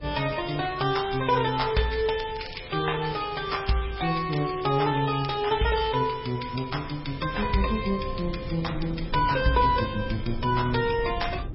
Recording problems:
lossy codec; MP3, log-spectral distance 6 dB, nothing above 5.5 kHz
low-frequency rumble; below 150 Hz, SNR 14 dB
crackling; from 1 to 6 s; loose cable, SNR 17 dB

